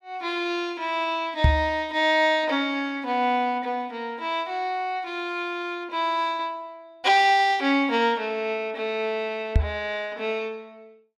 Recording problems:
microphone bump; at 1.5 s and at 9.5 s; peak +8 dB vs average level

